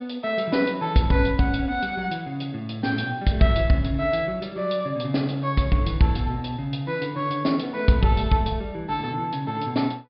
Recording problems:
treble cut off; nothing above 5.1 kHz

